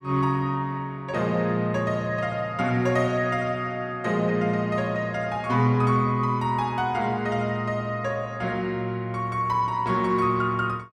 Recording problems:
none

